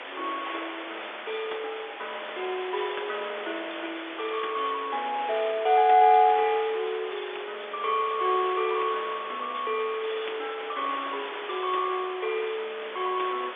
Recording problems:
telephone audio; 340 Hz to 3.6 kHz, G.711
background hiss; SNR 10 dB
wind on the microphone; below 2.7 kHz, SNR 17 dB

